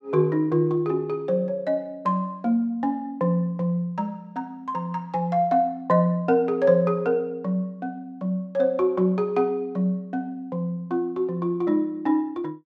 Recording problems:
none

